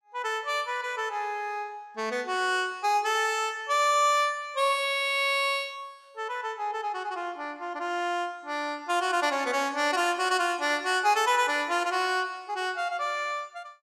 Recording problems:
none

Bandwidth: 14.5 kHz